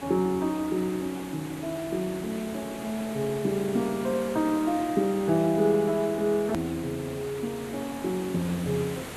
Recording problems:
hiss; slope -5 dB per octave, SNR 12 dB
click at an edit; at 6.5 s

